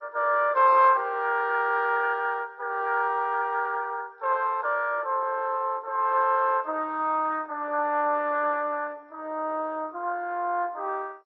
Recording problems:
lossy compression; MP2, log-spectral distance 3 dB, nothing above 4.8 kHz

